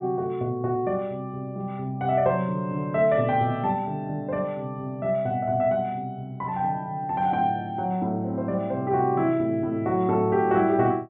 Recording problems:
low-pass filter; nothing above 3.8 kHz

